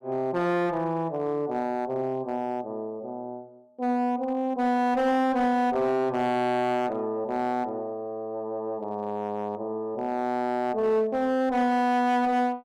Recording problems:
distortion; hard clipping, uneven, signal-to-distortion ratio 9 dB

